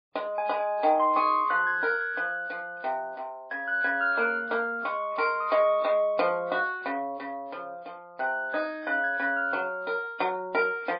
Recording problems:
lossy compression; MP3, log-spectral distance 2 dB, nothing above 4.5 kHz

